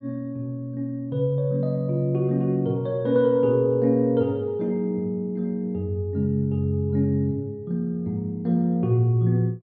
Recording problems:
none

